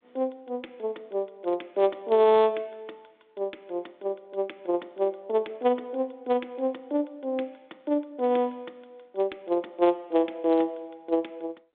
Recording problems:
phone line; 260 Hz to 3.7 kHz, G.726

